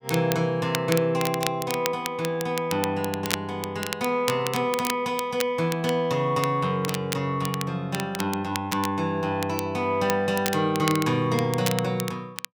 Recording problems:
crackle; vinyl, SNR 9 dB

